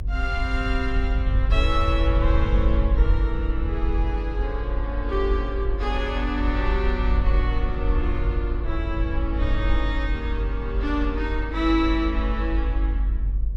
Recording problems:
electrical hum; 60 Hz, harmonics up to 1.7 kHz, SNR 25 dB
rumble; below 56 Hz, strongest tone 48 Hz, SNR -2 dB

